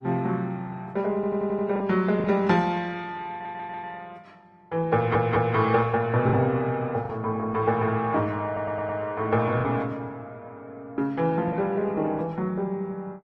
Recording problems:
lossy compression; AAC, then Opus, log-spectral distance 2 dB
lost packets; 3% of the sound replaced, filled with the last packet
audio stuttering; 4 times, first at 1 s

